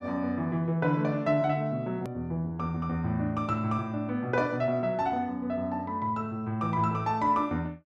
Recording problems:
hard cut with a click; at 2 s

